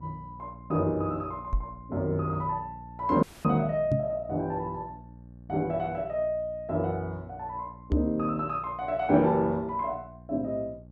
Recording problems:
electrical hum; 60 Hz, harmonics up to 600 Hz, SNR 19 dB
microphone bump; at 1.5 s, at 4 s and at 8 s; peak +5 dB vs average level
dropout; at 3 s

